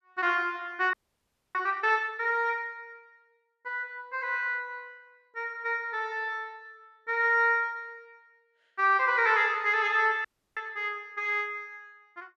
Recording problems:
audio freezing; at 1 s for 0.5 s and at 10 s

